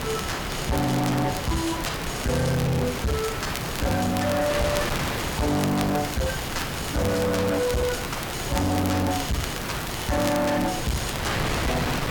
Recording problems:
distortion; hard clipping, uneven, signal-to-distortion ratio 6 dB
hiss; slope +4 dB per octave, SNR 14 dB
wind noise; below 2.2 kHz, SNR 4 dB
crackle; vinyl, SNR 12 dB

